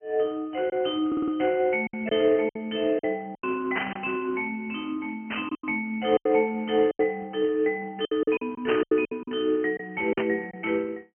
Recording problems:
telephone audio; 260 Hz to 3.2 kHz, Speex
lost packets; 9% of the sound replaced, filled with silence
stutter; at 1 s
burst of static; 4 times, first at 4 s; peak +1 dB vs average level

